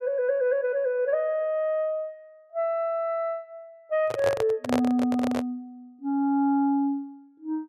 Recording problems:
microphone handling noise; from 4 to 5.5 s; peak +3 dB vs average level

